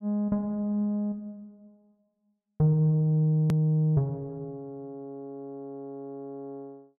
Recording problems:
click at an edit; at 3.5 s

